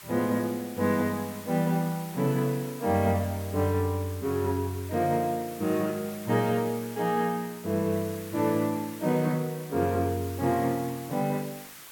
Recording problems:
background hiss; SNR 16 dB

